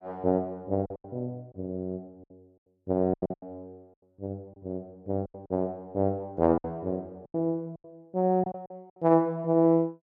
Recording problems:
packet loss; 10% of the sound replaced, filled with silence

